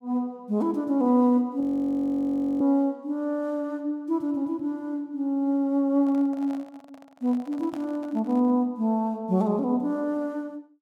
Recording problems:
audio freezing; at 1.5 s for 1 s
handling noise; from 6 to 8.5 s; peak -11 dB vs average level

